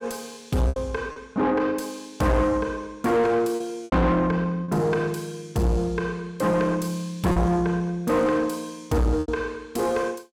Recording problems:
distorted audio; soft clipping, signal-to-distortion ratio 7 dB
lost packets; 4% of the sound replaced, filled with repeated pitch periods

